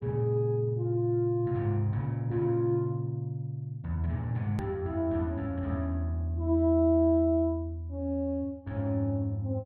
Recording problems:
hard cut with a click; at 4.5 s

